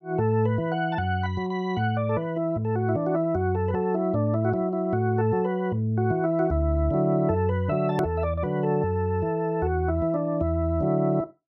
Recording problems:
hard cut with a click; at 8 s

